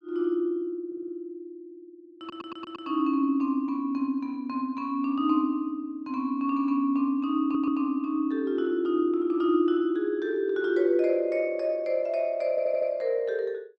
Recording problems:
stutter; 4 times, first at 1 s

